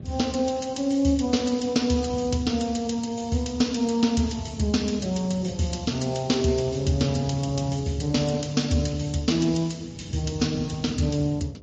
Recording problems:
codec artefacts; Speex, then MP3, log-spectral distance 4 dB, nothing above 7.3 kHz
electrical hum; 50 Hz, harmonics up to 700 Hz, SNR 26 dB
wind on the microphone; below 200 Hz, SNR 15 dB

